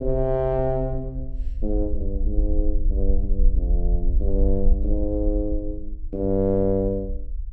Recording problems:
low-frequency rumble; below 50 Hz, SNR 1 dB

